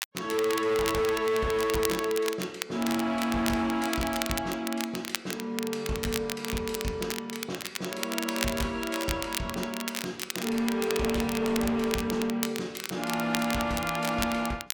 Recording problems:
distorted audio; hard clipping, signal-to-distortion ratio 11 dB
crackle; vinyl, SNR 6 dB

